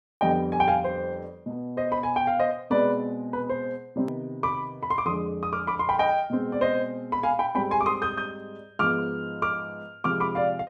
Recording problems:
click at an edit; at 4 s

